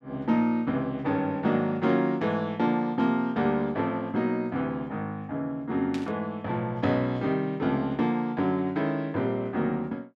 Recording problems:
burst of static; at 6 s; peak -8 dB vs average level

